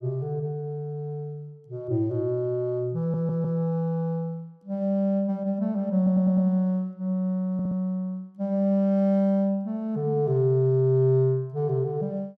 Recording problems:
audio stuttering; at 3 s, at 6 s and at 7.5 s

